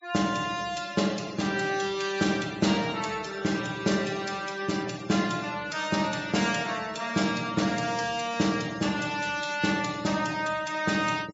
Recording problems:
low-pass filter; nothing above 8 kHz
denoising artefacts; signal-to-artefact ratio 17 dB

